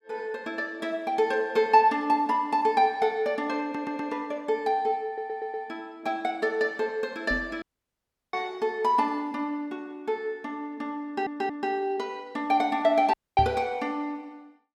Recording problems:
stutter; at 3.5 s, at 5 s and at 11 s
microphone thump; at 7.5 s and at 13 s; peak -1 dB vs average level
dropout; at 7.5 s for 0.5 s and at 13 s

